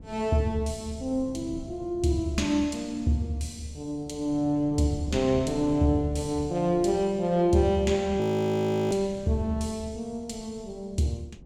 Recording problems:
wind noise; below 220 Hz, SNR 17 dB
frozen audio; at 8 s for 0.5 s

